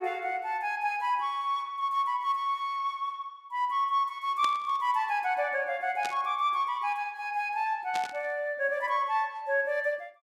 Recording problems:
static burst; at 4.5 s, at 6 s and at 8 s; peak -4 dB vs average level

